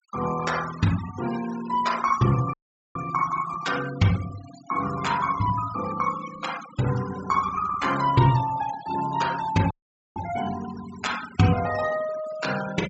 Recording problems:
low-pass filter; nothing above 7.8 kHz
denoising artefacts; signal-to-artefact ratio 13 dB
audio cutting out; at 2.5 s and at 9.5 s

